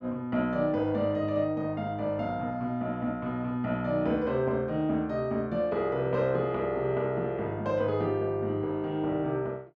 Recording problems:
none

